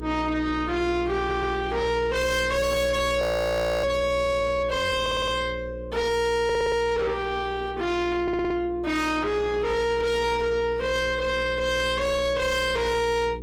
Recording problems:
lossy compression; Opus, log-spectral distance 2 dB, nothing above 19 kHz
distortion; soft clipping, signal-to-distortion ratio 6 dB
electrical hum; 60 Hz, harmonics up to 480 Hz, SNR 13 dB
audio stuttering; 4 times, first at 1 s
audio freezing; at 3 s for 0.5 s

